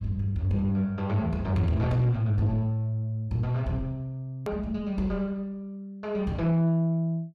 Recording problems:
distorted audio; soft clipping, signal-to-distortion ratio 11 dB
hard cut with a click; at 4.5 s

